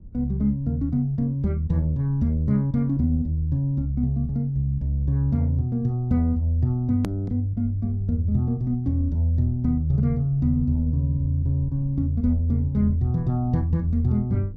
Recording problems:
rumble; below 100 Hz, SNR 18 dB
hard cut with a click; at 7 s

